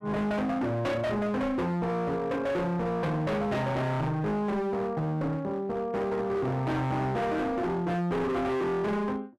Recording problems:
distorted audio; hard clipping, signal-to-distortion ratio 7 dB

